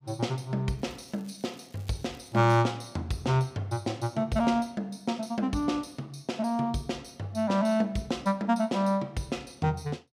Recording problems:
crackling; from 1 to 2.5 s; loose cable, SNR 28 dB

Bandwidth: 15.5 kHz